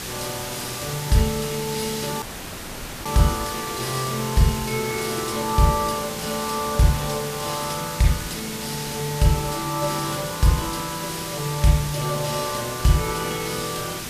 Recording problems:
background hiss; slope -1 dB per octave, SNR 6 dB
audio cutting out; at 2 s for 1 s

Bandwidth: 14.5 kHz